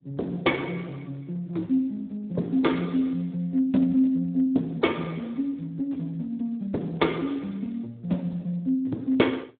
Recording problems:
phone line; 190 Hz to 3.5 kHz, Speex

